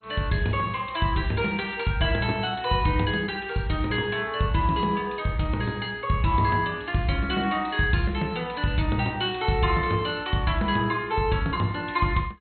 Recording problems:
lossy compression; MP2, log-spectral distance 4 dB, nothing above 4.2 kHz

